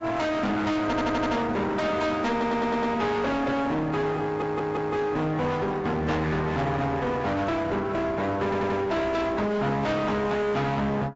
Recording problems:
lossy compression; AAC, log-spectral distance 2 dB, nothing above 7.6 kHz
distorted audio; hard clipping, uneven, signal-to-distortion ratio 5 dB
stutter; 4 times, first at 1 s

